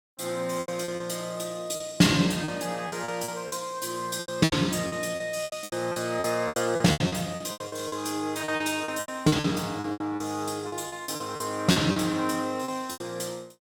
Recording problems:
packet loss; 16% of the sound replaced, filled with repeated pitch periods

